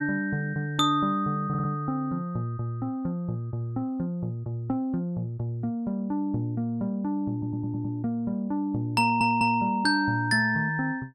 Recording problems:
audio stuttering; at 1.5 s, at 7.5 s and at 9 s

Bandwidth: 13 kHz